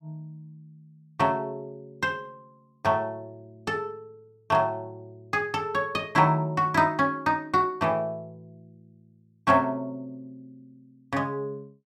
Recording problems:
none

